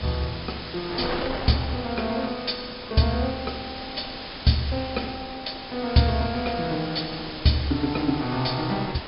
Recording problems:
treble cut off; nothing above 5.5 kHz
background hiss; slope 0 dB per octave, SNR 11 dB
wind on the microphone; below 1.6 kHz, SNR 11 dB

